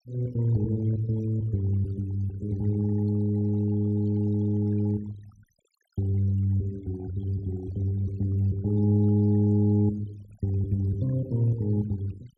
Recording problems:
denoising artefacts; signal-to-artefact ratio 25 dB

